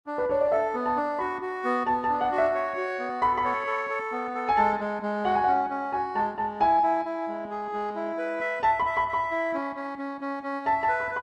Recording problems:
lossy compression; Opus, log-spectral distance 2 dB, nothing above 11.6 kHz

